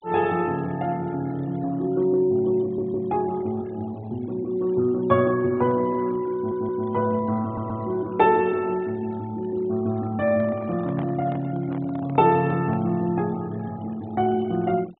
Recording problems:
low-pass filter; nothing above 4 kHz
noise reduction artefacts; signal-to-artefact ratio 25 dB
stutter; at 2.5 s, at 6.5 s and at 7.5 s
microphone handling noise; from 10 to 13 s; peak -9 dB vs average level

